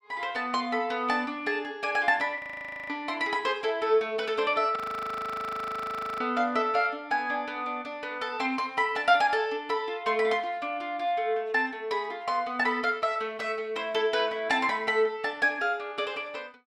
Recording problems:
frozen audio; at 2.5 s for 0.5 s and at 5 s for 1.5 s

